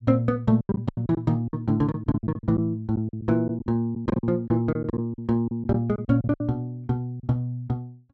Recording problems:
lost packets; 13% of the sound replaced, filled with silence

